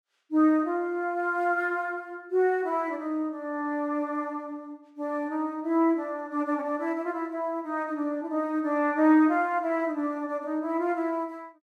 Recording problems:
none

